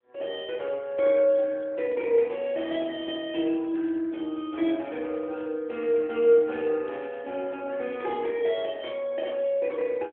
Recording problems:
phone line; 260 Hz to 3.4 kHz, AMR-NB

